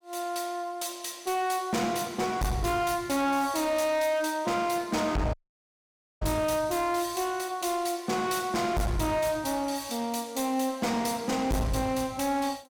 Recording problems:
distorted audio; hard clipping, signal-to-distortion ratio 7 dB
audio cutting out; at 5.5 s for 1 s

